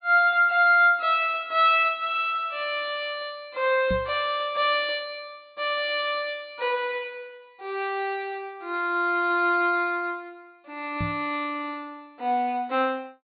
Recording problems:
treble cut off; nothing above 4.7 kHz
microphone bump; at 4 s and at 11 s; peak -3 dB vs average level

